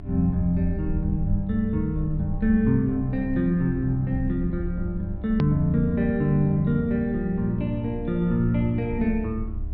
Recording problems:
low-pass filter; nothing above 5.5 kHz
electrical hum; 50 Hz, harmonics up to 700 Hz, SNR 16 dB
low-frequency rumble; below 70 Hz, strongest tone 30 Hz, SNR 11 dB
click at an edit; at 5.5 s

